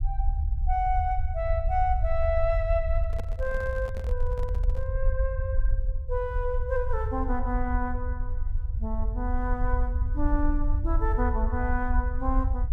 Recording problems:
rumble; below 66 Hz, SNR -1 dB
microphone handling noise; from 3 to 5 s; peak -5 dB vs average level

